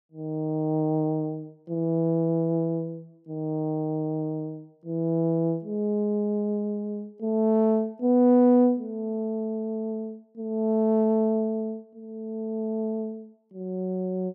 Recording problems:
none

